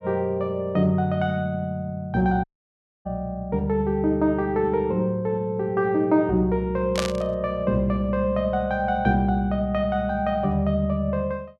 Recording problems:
audio cutting out; at 2.5 s for 0.5 s
burst of static; at 7 s; peak 0 dB vs average level

